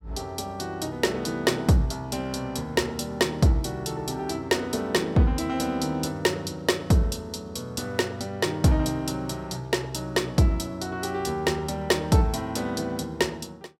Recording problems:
none

